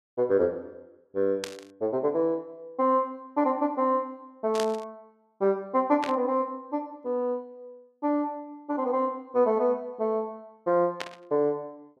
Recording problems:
static burst; 4 times, first at 1.5 s; peak -2 dB vs average level

